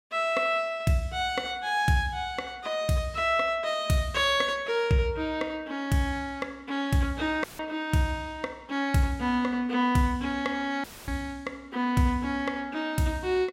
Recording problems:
audio cutting out; at 7.5 s and at 11 s; filled with static

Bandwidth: 16 kHz